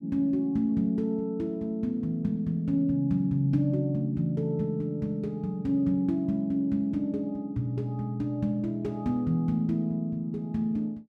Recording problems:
none

